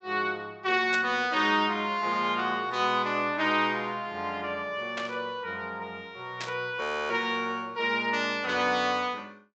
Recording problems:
low-pass filter; nothing above 8 kHz
burst of static; at 1 s, at 5 s and at 6.5 s; peak -3 dB vs average level
frozen audio; at 7 s

